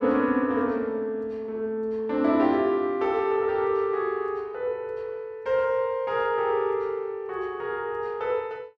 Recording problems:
none

